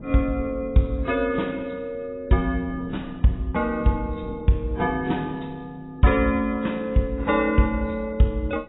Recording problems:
lossy codec; AAC, log-spectral distance 2 dB, nothing above 3.8 kHz
wind on the microphone; below 320 Hz, SNR 20 dB

